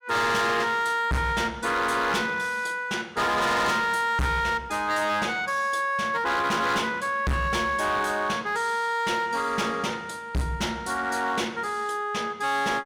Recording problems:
distortion; hard clipping, signal-to-distortion ratio 7 dB

